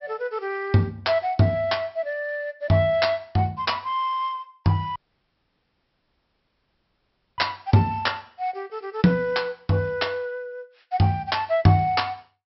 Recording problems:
low-pass filter; nothing above 5.6 kHz
audio cutting out; at 5 s for 2.5 s

